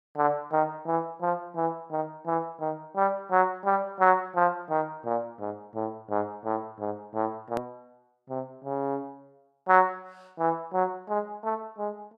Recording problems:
click at an edit; at 7.5 s

